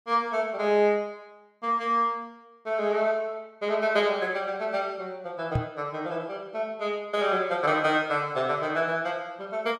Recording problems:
microphone thump; at 5.5 s; peak +3 dB vs average level

